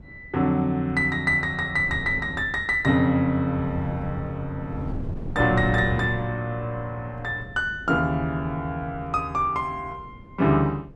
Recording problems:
wind on the microphone; below 220 Hz, SNR 14 dB

